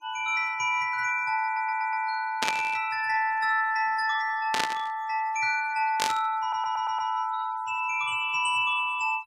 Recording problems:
denoising artefacts; signal-to-artefact ratio 24 dB
audio stuttering; at 1.5 s and at 6.5 s
burst of static; at 2.5 s, at 4.5 s and at 6 s; peak +3 dB vs average level

